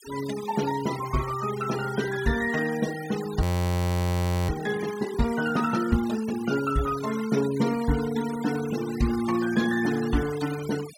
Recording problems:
denoising artefacts; signal-to-artefact ratio 14 dB
frozen audio; at 3.5 s for 1 s

